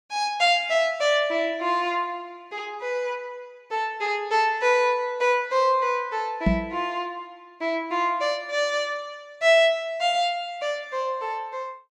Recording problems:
microphone thump; at 6.5 s; peak +6 dB vs average level

